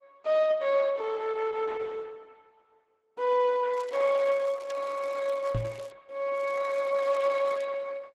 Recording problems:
codec artefacts; Opus, log-spectral distance 3 dB
crackle; from 3.5 to 6 s and from 6.5 to 7.5 s; loose cable, SNR 28 dB
microphone thump; at 5.5 s; peak 0 dB vs average level

